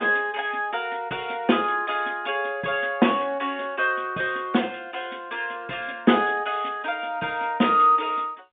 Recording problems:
phone line; 190 Hz to 3.6 kHz, G.711

